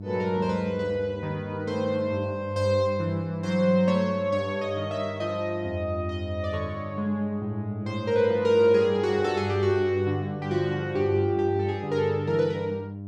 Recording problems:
hum; 50 Hz, harmonics up to 700 Hz, SNR 11 dB

